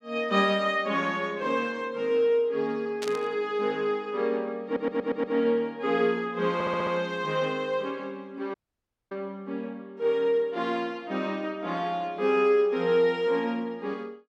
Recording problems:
burst of static; at 3 s; peak -5 dB vs average level
audio stuttering; at 4.5 s and at 6.5 s
audio cutting out; at 8.5 s for 0.5 s

